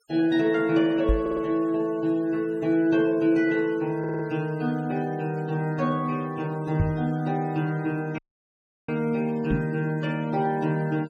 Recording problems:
noise reduction artefacts; signal-to-artefact ratio 26 dB
knock on the microphone; at 1 s, at 7 s and at 9.5 s; peak +4 dB vs average level
audio stuttering; at 1 s and at 4 s
audio cutting out; at 8 s for 0.5 s

